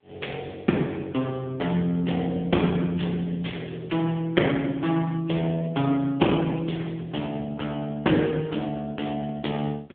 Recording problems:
telephone audio; 190 Hz to 3.4 kHz, AMR-NB
distorted audio; hard clipping, signal-to-distortion ratio 22 dB

